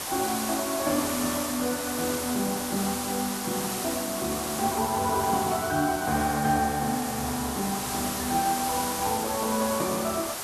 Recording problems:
background hiss; SNR 3 dB

